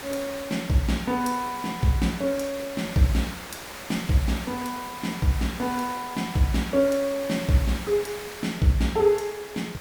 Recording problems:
hiss; slope -3 dB per octave, SNR 12 dB

